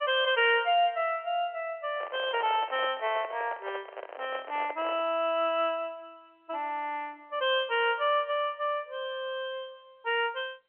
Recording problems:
telephone audio; 280 Hz to 3.2 kHz, G.711
microphone handling noise; from 2 to 5 s; peak -5 dB vs average level

